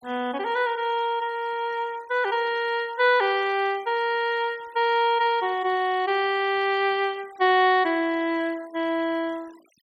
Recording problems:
noise reduction artefacts; signal-to-artefact ratio 25 dB

